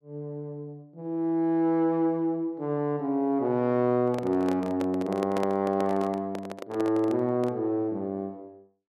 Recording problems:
handling noise; from 4 to 7.5 s; peak -2 dB vs average level

